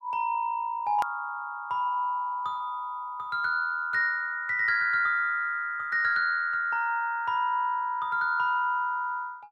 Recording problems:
edit click; at 1 s

